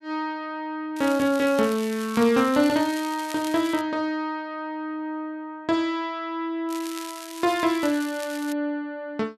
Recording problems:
crackling; from 1 to 4 s and from 6.5 to 8.5 s; loose cable, SNR 14 dB

